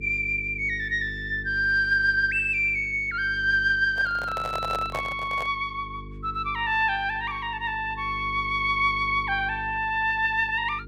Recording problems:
hum; 50 Hz, harmonics up to 450 Hz, SNR 17 dB
microphone handling noise; from 4 to 5.5 s; peak -4 dB vs average level

